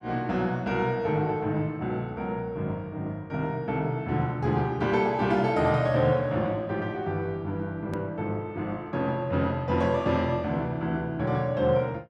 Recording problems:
edit click; at 8 s

